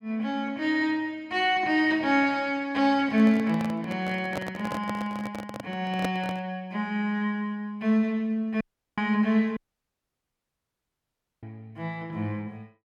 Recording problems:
microphone handling noise; from 3 to 6.5 s; peak 0 dB vs average level
dropout; at 8.5 s and at 9.5 s for 2 s

